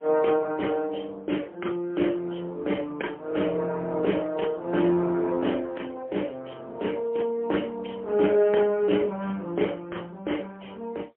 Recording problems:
phone line; 260 Hz to 3.2 kHz, AMR-NB, then MP3

